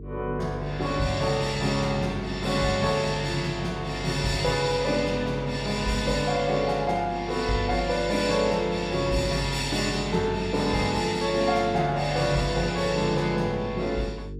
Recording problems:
hum; 50 Hz, harmonics up to 450 Hz, SNR 13 dB

